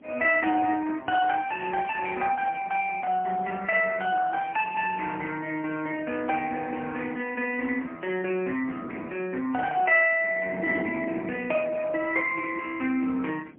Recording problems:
phone line; 220 Hz to 3 kHz, AMR-NB, then MP3
wind noise; below 370 Hz, SNR 16 dB

